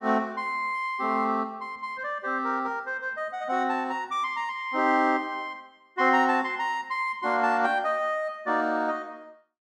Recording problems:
none

